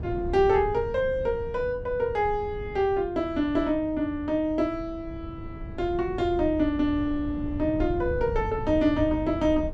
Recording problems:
rumble; below 140 Hz, SNR 11 dB

